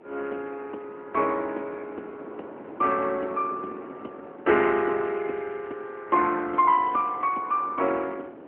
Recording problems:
phone line; 240 Hz to 3 kHz, AMR-NB
wind noise; below 620 Hz, SNR 19 dB

